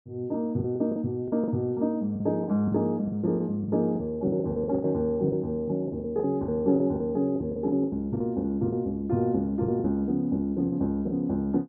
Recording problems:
packet loss; 13% of the sound replaced, filled with the last packet

